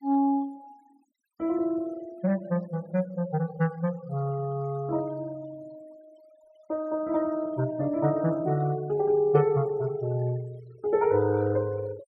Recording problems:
noise reduction artefacts; signal-to-artefact ratio 24 dB

